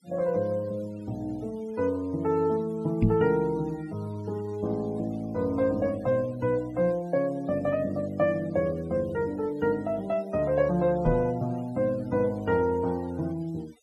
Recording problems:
denoising artefacts; signal-to-artefact ratio 25 dB
microphone thump; at 3 s and at 11 s; peak +8 dB vs average level

